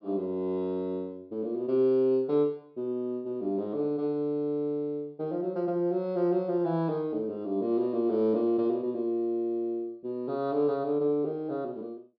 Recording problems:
low-pass filter; nothing above 5.5 kHz

